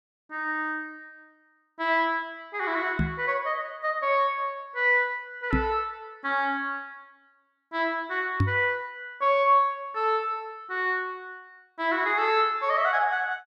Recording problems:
knock on the microphone; at 3 s, at 5.5 s and at 8.5 s; peak +5 dB vs average level

